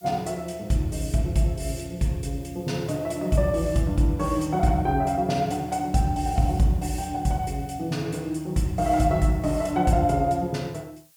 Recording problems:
hiss; slope +3 dB per octave, SNR 29 dB

